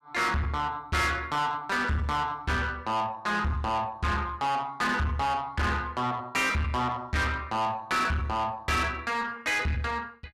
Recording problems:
distortion; soft clipping, signal-to-distortion ratio 7 dB

